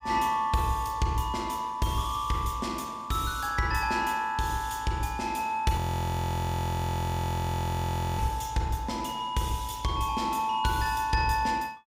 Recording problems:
audio freezing; at 6 s for 2.5 s

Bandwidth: 15.5 kHz